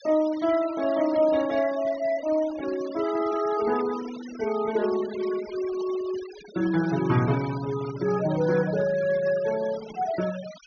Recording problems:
treble cut off; nothing above 6.3 kHz
noise reduction artefacts; signal-to-artefact ratio 16 dB

